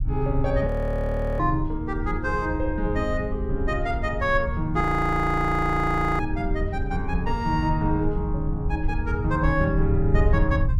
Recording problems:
rumble; below 84 Hz, SNR 4 dB
frozen audio; at 0.5 s for 0.5 s and at 5 s for 1.5 s

